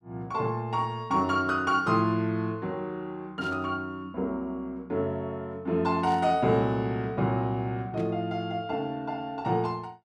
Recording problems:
burst of static; at 3.5 s, at 6 s and at 8 s; peak -14 dB vs average level

